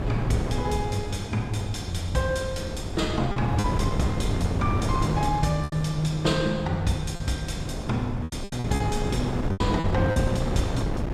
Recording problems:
wind on the microphone; below 340 Hz, SNR 3 dB
packet loss; 5% of the sound replaced, filled with repeated pitch periods

